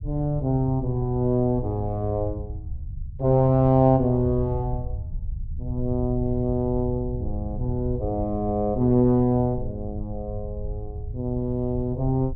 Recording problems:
rumble; below 90 Hz, SNR 10 dB

